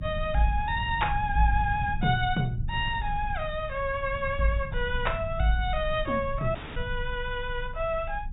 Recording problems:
low-pass filter; nothing above 4 kHz
rumble; below 96 Hz, strongest tone 24 Hz, SNR 8 dB
audio cutting out; at 6.5 s

